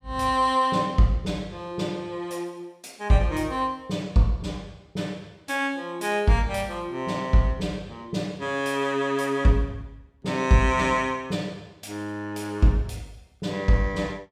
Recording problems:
none

